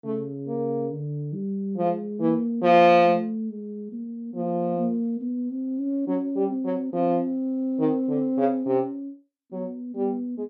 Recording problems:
none

